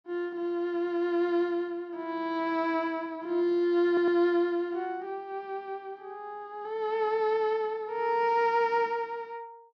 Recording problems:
stutter; at 4 s

